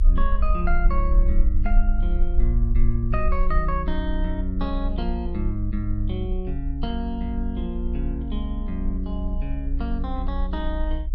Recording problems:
low-frequency rumble; below 56 Hz, SNR -3 dB

